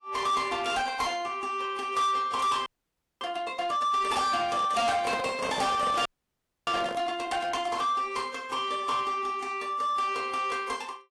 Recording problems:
codec artefacts; AAC, log-spectral distance 3 dB, nothing above 11.6 kHz
distorted audio; soft clipping, signal-to-distortion ratio 10 dB
frozen audio; at 2.5 s for 0.5 s and at 6 s for 0.5 s
microphone handling noise; from 4.5 to 7 s; peak 0 dB vs average level

